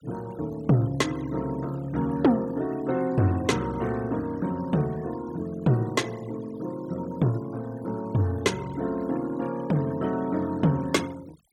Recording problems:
denoising artefacts; signal-to-artefact ratio 21 dB

